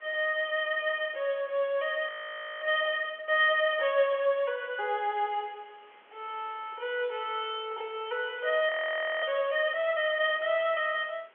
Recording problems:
telephone audio; 300 Hz to 3.3 kHz, G.711
hiss; SNR 29 dB
audio freezing; at 2 s for 0.5 s and at 8.5 s for 0.5 s

